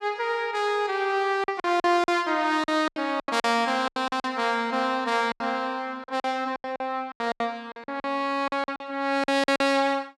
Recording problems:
lost packets; 13% of the sound replaced, filled with silence

